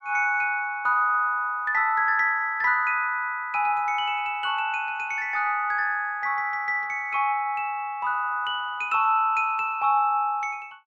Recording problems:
none

